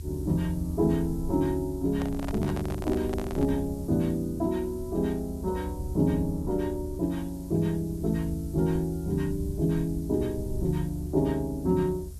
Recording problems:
hum; 60 Hz, harmonics up to 720 Hz, SNR 21 dB
background hiss; SNR 23 dB
rumble; below 78 Hz, SNR 10 dB
handling noise; from 2 to 3.5 s; peak -5 dB vs average level

